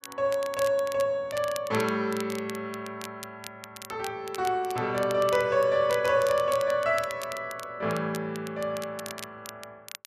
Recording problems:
crackle; vinyl, SNR 15 dB

